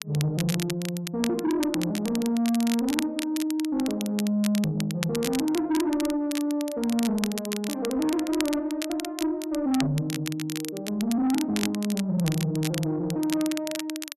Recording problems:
distortion; soft clipping, signal-to-distortion ratio 11 dB
crackle; vinyl, SNR 9 dB

